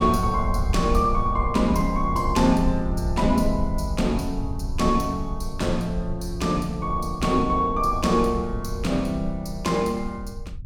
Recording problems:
low-frequency rumble; below 74 Hz, SNR 7 dB

